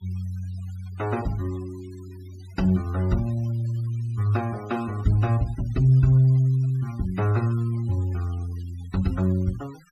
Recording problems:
denoising artefacts; signal-to-artefact ratio 24 dB

